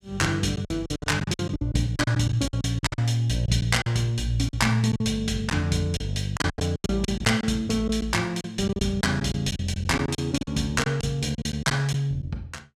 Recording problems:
packet loss; 14% of the sound replaced, filled with silence

